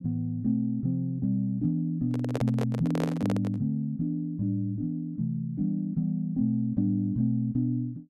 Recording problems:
handling noise; from 2 to 3.5 s; peak 0 dB vs average level

